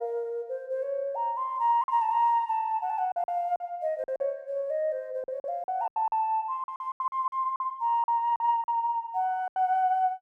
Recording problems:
packet loss; 9% of the sound replaced, filled with silence

